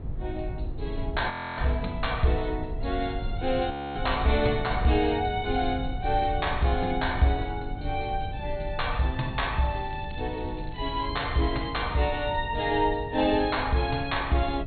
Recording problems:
treble cut off; nothing above 4.3 kHz
hum; 50 Hz, harmonics up to 500 Hz, SNR 15 dB
rumble; below 92 Hz, SNR 9 dB
audio freezing; at 1.5 s and at 3.5 s
crackling; from 9.5 to 11 s; loose cable, SNR 27 dB

